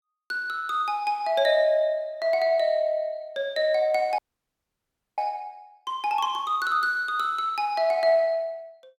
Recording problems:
frozen audio; at 4 s for 1 s

